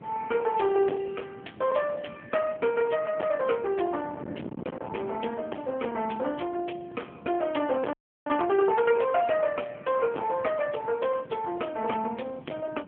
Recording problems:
telephone audio; 220 Hz to 3.3 kHz, AMR-NB
distorted audio; hard clipping, uneven, signal-to-distortion ratio 10 dB
wind on the microphone; below 860 Hz, SNR 15 dB
frozen audio; at 8 s

